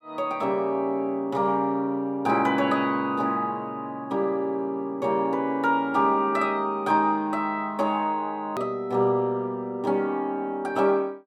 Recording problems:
hard cut with a click; at 8.5 s

